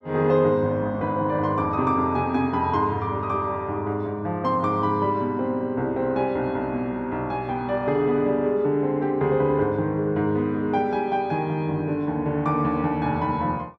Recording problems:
none

